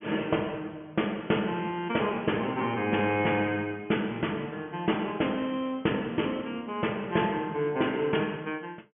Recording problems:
low-pass filter; nothing above 3.3 kHz

